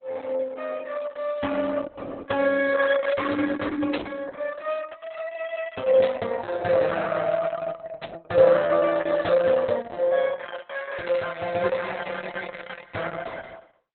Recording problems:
lossy compression; Opus, log-spectral distance 4 dB, nothing above 3.9 kHz
burst of static; 4 times, first at 4 s; peak -6 dB vs average level

